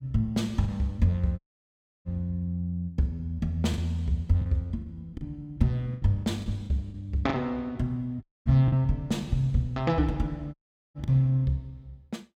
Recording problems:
lost packets; 5% of the sound replaced, filled with the last packet
dropout; at 1.5 s for 0.5 s, at 8 s and at 11 s

